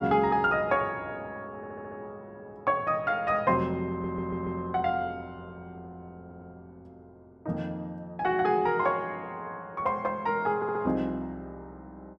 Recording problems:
audio stuttering; 4 times, first at 1.5 s

